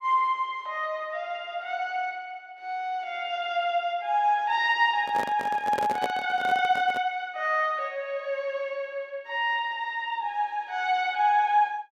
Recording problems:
microphone handling noise; from 5 to 7 s; peak 0 dB vs average level

